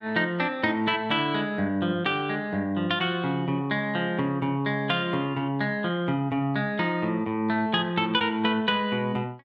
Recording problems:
none

